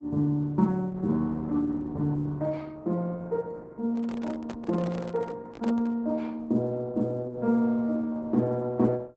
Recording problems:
lossy codec; Opus, log-spectral distance 2 dB, nothing above 7.3 kHz
microphone handling noise; from 4 to 6 s; peak -3 dB vs average level

